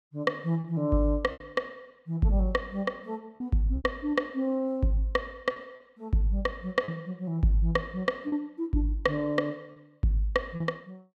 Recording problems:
packet loss; 4% of the sound replaced, filled with repeated pitch periods

